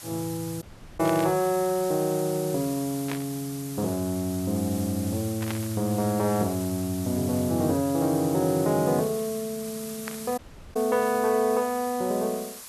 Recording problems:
background hiss; SNR 12 dB
audio cutting out; at 0.5 s and at 10 s
burst of static; 4 times, first at 1 s; peak -4 dB vs average level

